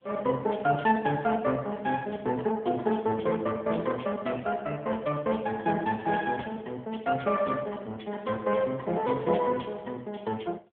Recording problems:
telephone audio; 190 Hz to 3.4 kHz, AMR-NB

